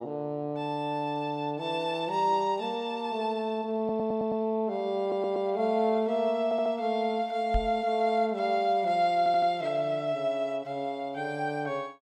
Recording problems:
audio stuttering; 4 times, first at 4 s
microphone thump; at 7.5 s; peak +1 dB vs average level

